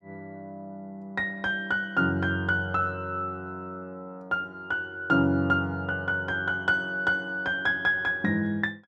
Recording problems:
none

